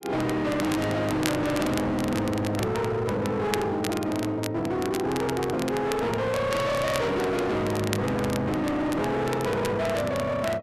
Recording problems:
distorted audio; hard clipping, signal-to-distortion ratio 6 dB
crackling; vinyl, SNR 12 dB

